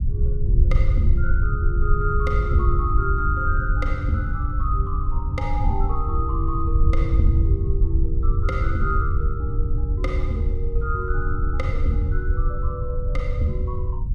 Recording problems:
low-frequency rumble; below 76 Hz, SNR -5 dB

